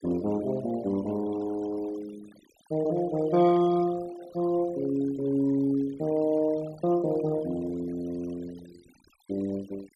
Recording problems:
denoising artefacts; signal-to-artefact ratio 21 dB

